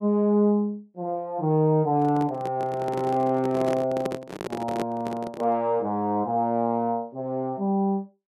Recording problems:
handling noise; from 2 to 5.5 s; peak -1 dB vs average level

